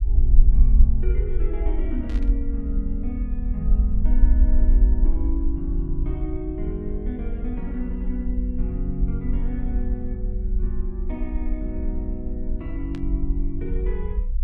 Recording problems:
low-frequency rumble; below 52 Hz, SNR -6 dB
burst of static; at 2 s and at 13 s; peak -8 dB vs average level

